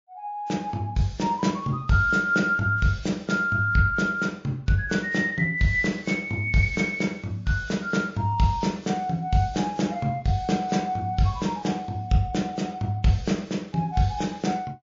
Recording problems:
lossy compression; MP3, log-spectral distance 2 dB

